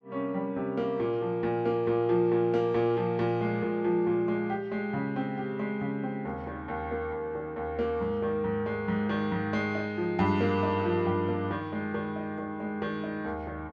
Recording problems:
none

